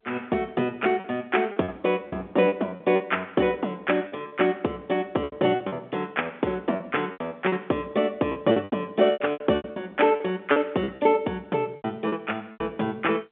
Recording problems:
telephone audio; 240 Hz to 3.4 kHz, G.711
lost packets; 11% of the sound replaced, filled with repeated pitch periods

